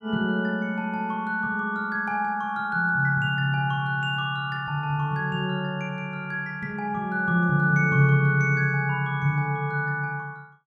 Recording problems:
none

